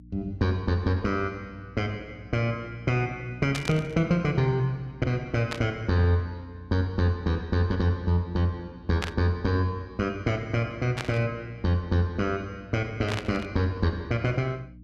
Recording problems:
electrical hum; 60 Hz, harmonics up to 300 Hz, SNR 21 dB
static burst; 5 times, first at 3.5 s; peak +1 dB vs average level

